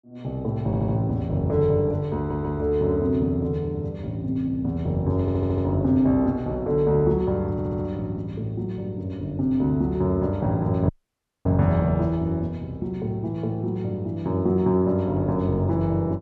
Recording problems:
audio stuttering; 4 times, first at 0.5 s
dropout; at 11 s for 0.5 s

